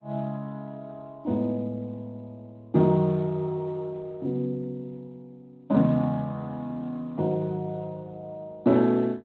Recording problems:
lossy codec; Speex, then Opus, log-spectral distance 2 dB

